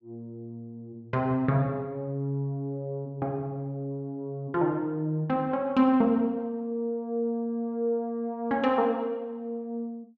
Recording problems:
none

